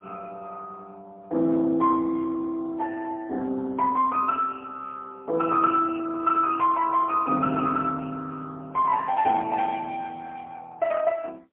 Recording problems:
telephone audio; 190 Hz to 2.3 kHz, AMR-NB, then MP3

